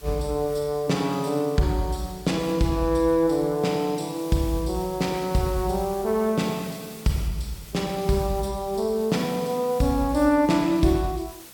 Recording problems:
hiss; slope -1 dB per octave, SNR 19 dB

